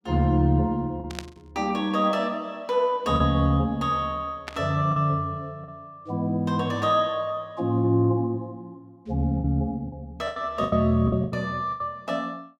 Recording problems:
lost packets; 6% of the sound replaced, filled with the last packet
static burst; at 1 s and at 4.5 s; peak -4 dB vs average level

